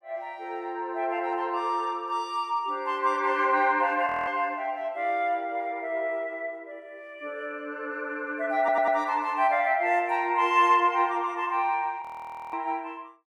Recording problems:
audio freezing; at 4 s and at 12 s for 0.5 s
stutter; at 8.5 s

